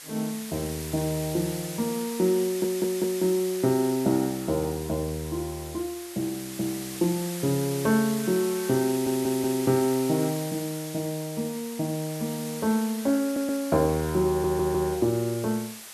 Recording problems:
background hiss; slope +1 dB per octave, SNR 11 dB
audio stuttering; 4 times, first at 2.5 s

